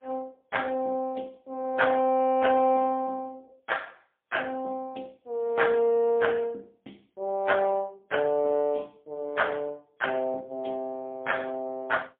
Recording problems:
telephone audio; 280 Hz to 3.4 kHz, AMR-NB, then MP3

